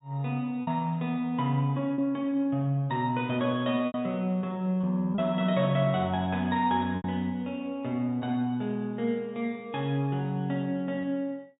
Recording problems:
treble cut off; nothing above 4 kHz
lost packets; 3% of the sound replaced, filled with repeated pitch periods

